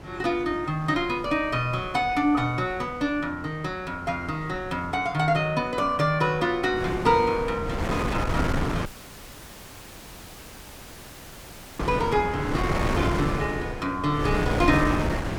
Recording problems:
wind noise; below 770 Hz, SNR 5 dB
dropout; at 9 s for 3 s

